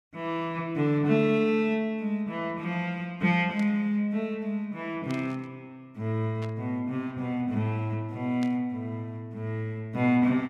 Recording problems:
static burst; 4 times, first at 3.5 s; peak -11 dB vs average level

